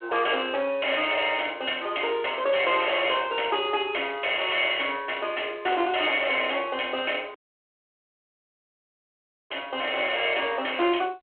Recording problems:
telephone audio; 300 Hz to 3.3 kHz, G.726
distorted audio; soft clipping, signal-to-distortion ratio 9 dB
audio cutting out; at 7.5 s for 2 s

